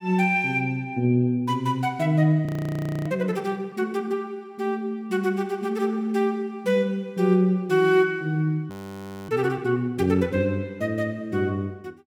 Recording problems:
audio freezing; at 2.5 s for 0.5 s and at 8.5 s for 0.5 s

